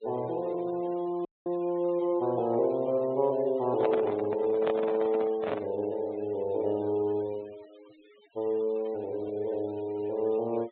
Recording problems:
treble cut off; nothing above 4 kHz
noise reduction artefacts; signal-to-artefact ratio 24 dB
dropout; at 1.5 s
handling noise; from 4 to 5.5 s; peak +1 dB vs average level

